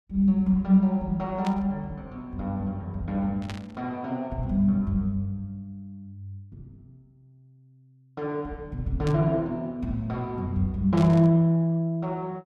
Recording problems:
static burst; 4 times, first at 1.5 s; peak -8 dB vs average level

